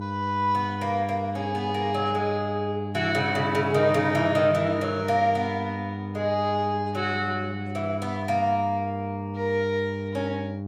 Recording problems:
electrical hum; 50 Hz, harmonics up to 800 Hz, SNR 7 dB

